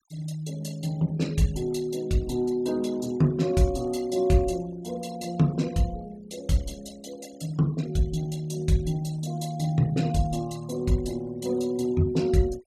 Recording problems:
denoising artefacts; signal-to-artefact ratio 22 dB

